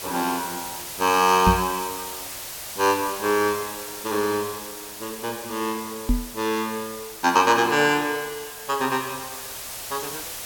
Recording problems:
hiss; SNR 10 dB
microphone bump; at 1.5 s and at 6 s; peak +6 dB vs average level

